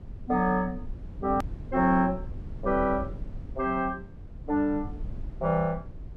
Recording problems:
rumble; below 100 Hz, SNR 13 dB
click at an edit; at 1.5 s

